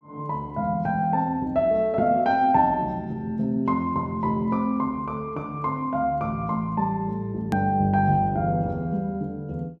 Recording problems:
edit click; at 7.5 s

